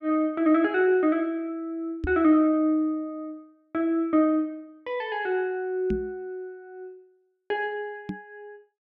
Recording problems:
microphone thump; at 2 s, at 6 s and at 8 s; peak -1 dB vs average level

